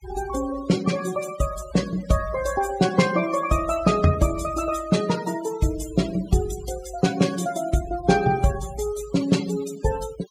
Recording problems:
noise reduction artefacts; signal-to-artefact ratio 15 dB

